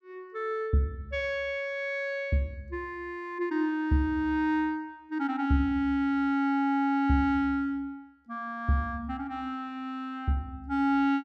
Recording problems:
none

